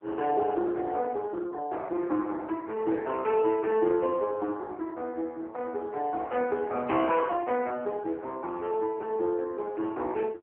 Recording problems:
phone line; 260 Hz to 2.2 kHz, AMR-NB

